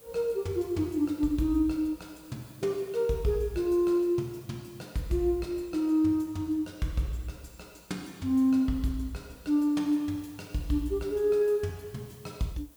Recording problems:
background hiss; SNR 26 dB

